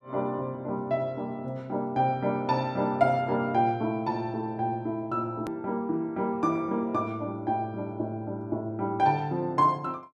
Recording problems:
click at an edit; at 5.5 s

